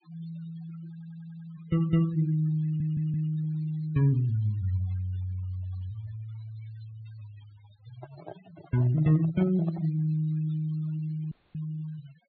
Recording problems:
treble missing; nothing above 4.5 kHz
noise reduction artefacts; signal-to-artefact ratio 23 dB
audio stuttering; at 1 s and at 2.5 s
microphone handling noise; from 8 to 10 s; peak -9 dB vs average level
audio cutting out; at 11 s

